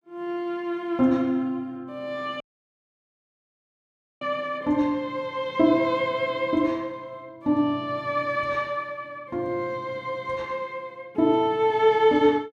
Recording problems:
dropout; at 2.5 s for 2 s

